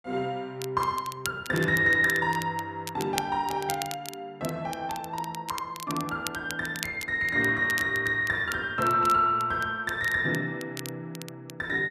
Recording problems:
crackle; vinyl, SNR 14 dB

